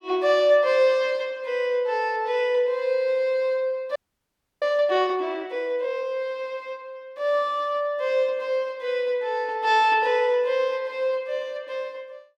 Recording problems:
audio freezing; at 4 s for 0.5 s

